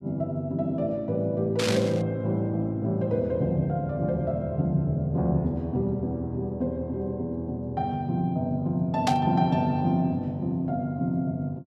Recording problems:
burst of static; at 1.5 s and at 9 s; peak +1 dB vs average level

